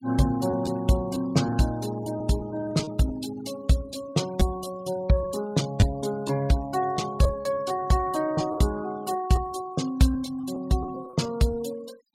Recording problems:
noise reduction artefacts; signal-to-artefact ratio 19 dB
lost packets; 6% of the sound replaced, filled with repeated pitch periods

